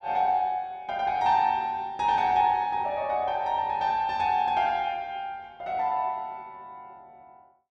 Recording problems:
none

